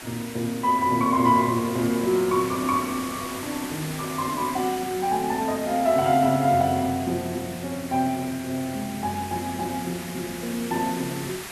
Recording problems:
background hiss; slope -2 dB per octave, SNR 11 dB

